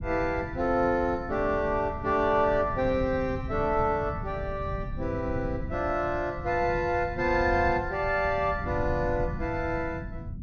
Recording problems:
treble cut off; nothing above 6.4 kHz
rumble; below 150 Hz, SNR 10 dB

